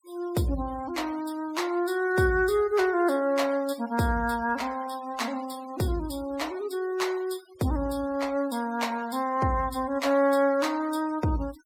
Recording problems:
noise reduction artefacts; signal-to-artefact ratio 21 dB

